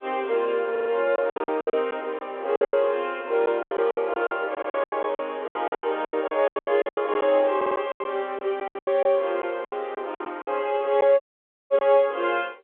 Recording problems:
phone line; 320 Hz to 3.5 kHz, G.711
lost packets; 17% of the sound replaced, filled with silence
audio stuttering; at 0.5 s, at 4.5 s and at 7.5 s
audio cutting out; at 11 s for 0.5 s

